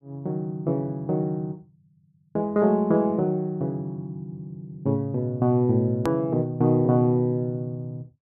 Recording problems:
click at an edit; at 6 s

